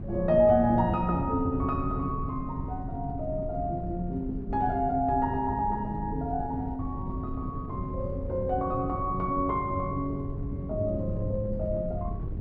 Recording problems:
wind noise; below 160 Hz, SNR 8 dB

